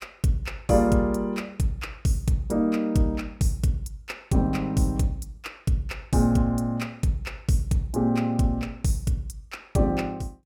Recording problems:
none

